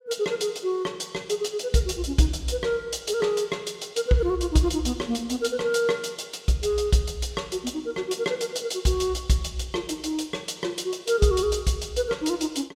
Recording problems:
none

